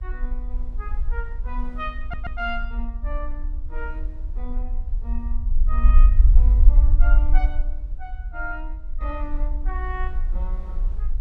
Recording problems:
rumble; below 50 Hz, SNR -11 dB
wind on the microphone; below 420 Hz, SNR 17 dB
audio stuttering; at 2 s

